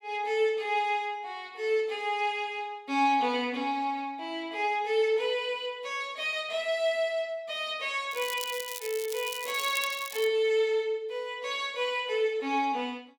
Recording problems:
crackling; from 8 to 10 s; loose cable, SNR 10 dB

